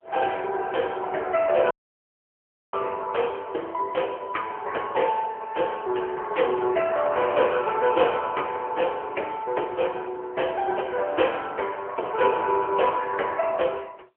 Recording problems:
phone line; 320 Hz to 3.1 kHz, AMR-NB
audio cutting out; at 1.5 s for 1 s

